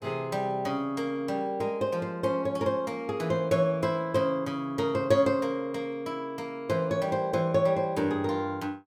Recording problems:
none

